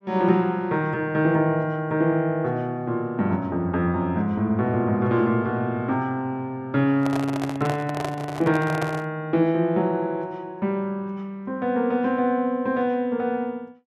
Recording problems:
microphone handling noise; from 7 to 9 s; peak -1 dB vs average level

